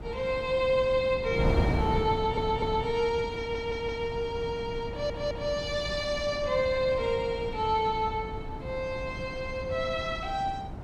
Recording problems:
wind noise; below 310 Hz, SNR 7 dB
audio stuttering; at 2 s, at 3.5 s and at 5 s

